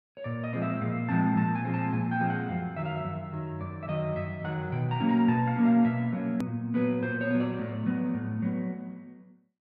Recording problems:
edit click; at 6.5 s

